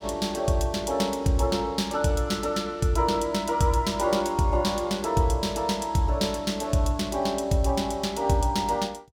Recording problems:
none

